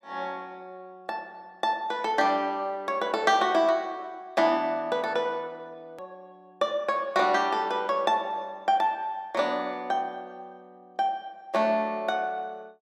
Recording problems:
hard cut with a click; at 6 s

